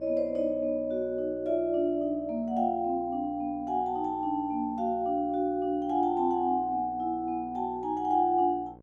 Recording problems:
electrical hum; 60 Hz, harmonics up to 1.1 kHz, SNR 23 dB

